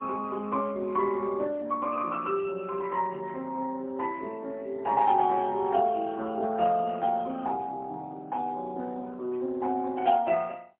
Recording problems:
phone line; 240 Hz to 3.2 kHz, AMR-NB, then MP3

